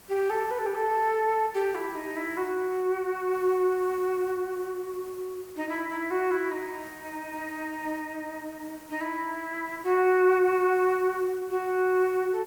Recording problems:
hiss; slope -3 dB per octave, SNR 22 dB

